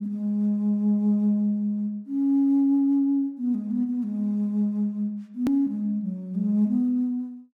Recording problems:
hard cut with a click; at 5.5 s

